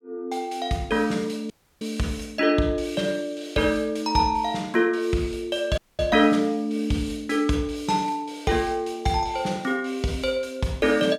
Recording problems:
audio cutting out; at 1.5 s and at 6 s

